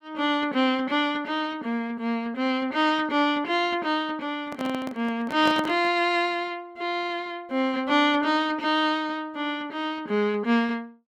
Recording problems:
microphone handling noise; from 4.5 to 6 s; peak -2 dB vs average level

